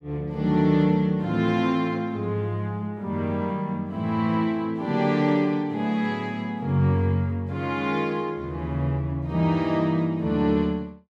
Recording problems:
none

